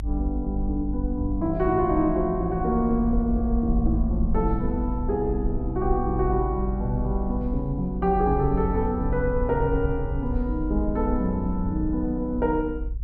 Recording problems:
rumble; below 56 Hz, strongest tone 52 Hz, SNR 5 dB

